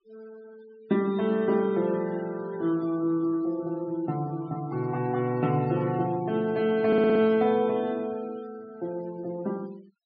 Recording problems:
treble cut off; nothing above 5.5 kHz
noise reduction artefacts; signal-to-artefact ratio 23 dB
stutter; at 7 s

